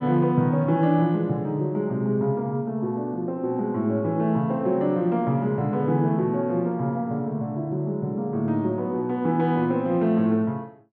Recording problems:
none

